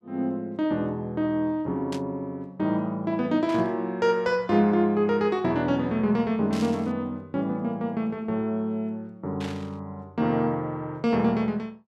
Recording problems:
static burst; 4 times, first at 2 s; peak -8 dB vs average level

